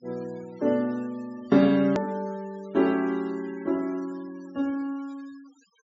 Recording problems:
low-pass filter; nothing above 7.5 kHz
noise reduction artefacts; signal-to-artefact ratio 25 dB
edit click; at 2 s

